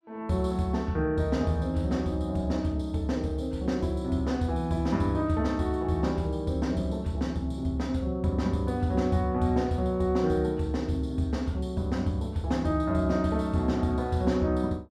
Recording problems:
none

